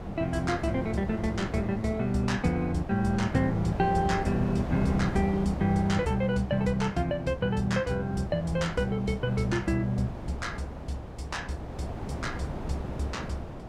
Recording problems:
wind on the microphone; below 580 Hz, SNR 9 dB

